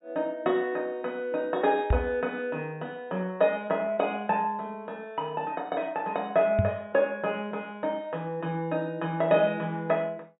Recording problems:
low-pass filter; nothing above 4 kHz
microphone thump; at 2 s and at 6.5 s; peak +7 dB vs average level

